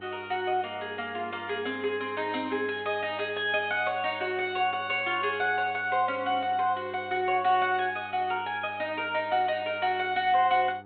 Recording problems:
low-pass filter; nothing above 4 kHz
electrical hum; 50 Hz, harmonics up to 1.7 kHz, SNR 23 dB

